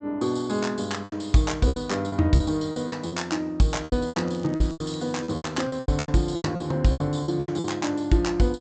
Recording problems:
treble cut off; nothing above 8 kHz
lost packets; 15% of the sound replaced, filled with repeated pitch periods
crackling; from 4.5 to 5.5 s; loose cable, SNR 27 dB

